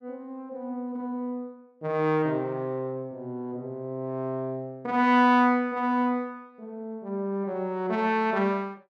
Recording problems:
none

